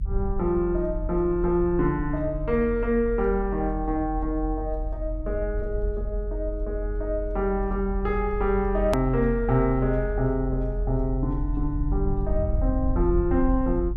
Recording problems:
low-frequency rumble; below 54 Hz, strongest tone 44 Hz, SNR 5 dB
hard cut with a click; at 9 s

